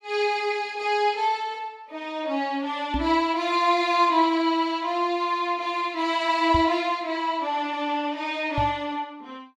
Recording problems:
microphone bump; at 3 s, at 6.5 s and at 8.5 s; peak -1 dB vs average level

